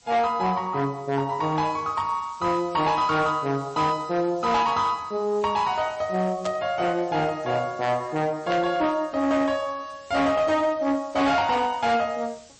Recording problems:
lossy compression; MP3, log-spectral distance 4 dB, nothing above 8 kHz
distortion; hard clipping, signal-to-distortion ratio 12 dB
hiss; SNR 26 dB
static burst; at 6.5 s and at 8.5 s; peak -6 dB vs average level

